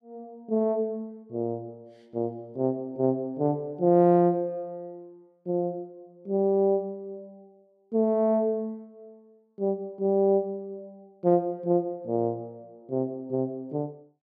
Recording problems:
none

